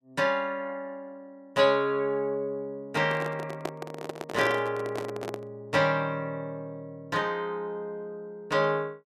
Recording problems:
microphone handling noise; from 3 to 5.5 s; peak +1 dB vs average level

